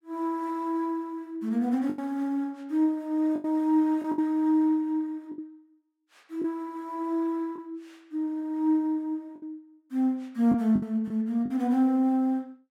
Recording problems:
packet loss; 5% of the sound replaced, filled with the last packet

